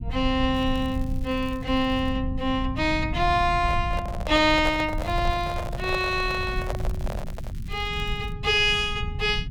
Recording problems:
rumble; below 110 Hz, SNR 8 dB
crackling; from 0.5 to 2 s and from 4.5 to 8.5 s; loose cable, SNR 28 dB
microphone handling noise; from 3.5 to 7.5 s; peak -3 dB vs average level

